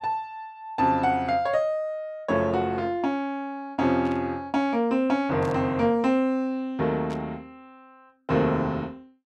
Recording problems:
burst of static; at 4 s, at 5.5 s and at 7 s; peak -14 dB vs average level

